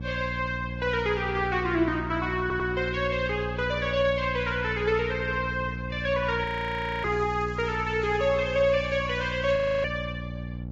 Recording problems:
lossy codec; Vorbis, log-spectral distance 3 dB
hum; 60 Hz, harmonics up to 600 Hz, SNR 8 dB
stutter; at 2.5 s
frozen audio; at 6.5 s for 0.5 s and at 9.5 s
crackle; from 7 to 9.5 s; loose cable, SNR 25 dB

